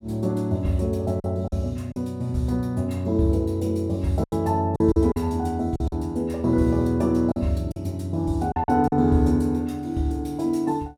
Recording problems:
packet loss; 6% of the sound replaced, filled with silence

